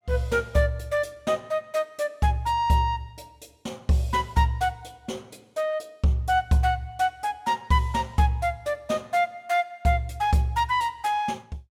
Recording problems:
none

